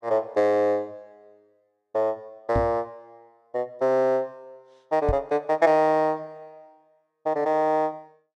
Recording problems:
microphone bump; at 2.5 s and at 5 s; peak +1 dB vs average level

